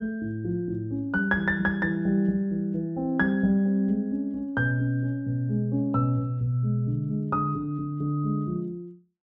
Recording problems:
none

